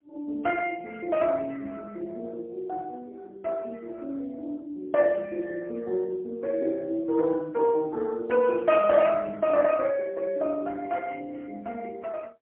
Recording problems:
phone line; 240 Hz to 3.1 kHz, AMR-NB, then MP3

